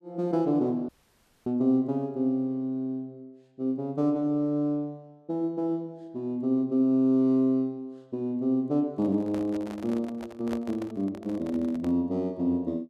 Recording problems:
dropout; at 1 s for 0.5 s
handling noise; from 9 to 12 s; peak -6 dB vs average level

